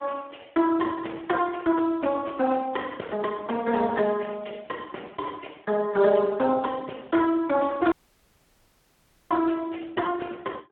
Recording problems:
telephone audio; 240 Hz to 3.5 kHz, Speex
audio cutting out; at 8 s for 1.5 s

